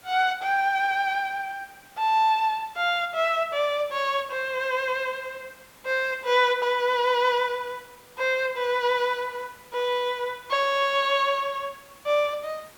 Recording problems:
background hiss; slope -3 dB per octave, SNR 26 dB

